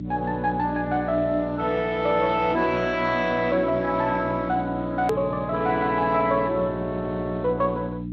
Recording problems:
lossy compression; Speex, log-spectral distance 3 dB, nothing above 13.1 kHz
hum; 60 Hz, harmonics up to 300 Hz, SNR 9 dB
hard cut with a click; at 5 s

